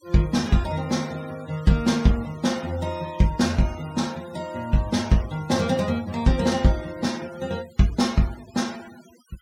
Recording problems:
noise reduction artefacts; signal-to-artefact ratio 21 dB

